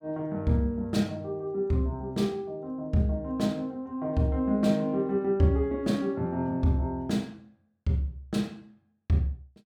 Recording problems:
none

